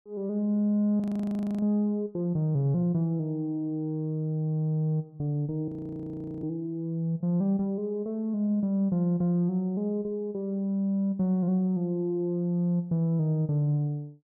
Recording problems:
frozen audio; at 1 s for 0.5 s and at 5.5 s for 1 s

